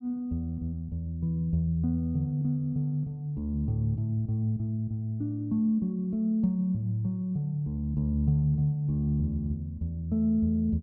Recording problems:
none

